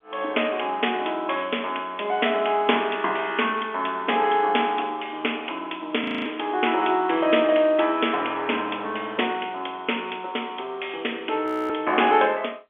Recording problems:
phone line; 280 Hz to 3.5 kHz, G.711
frozen audio; at 6 s and at 11 s

